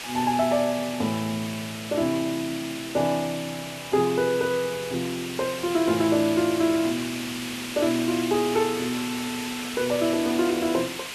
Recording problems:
background hiss; SNR 8 dB

